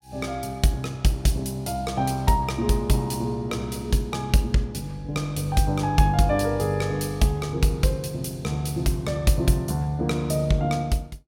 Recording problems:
none

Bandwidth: 16 kHz